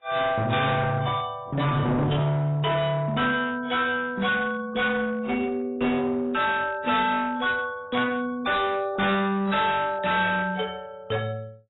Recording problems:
lossy codec; AAC, log-spectral distance 3 dB, nothing above 3.8 kHz
distorted audio; hard clipping, uneven, signal-to-distortion ratio 7 dB
burst of static; at 8 s; peak -6 dB vs average level

